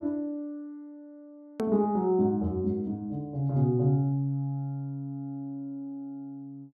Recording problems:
hard cut with a click; at 1.5 s

